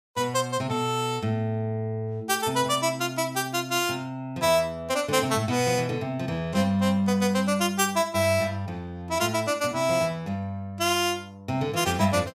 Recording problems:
none

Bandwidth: 15 kHz